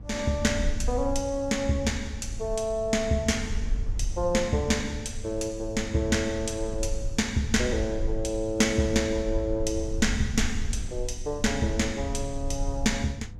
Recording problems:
hum; 50 Hz, harmonics up to 700 Hz, SNR 18 dB
low-frequency rumble; below 62 Hz, SNR 9 dB

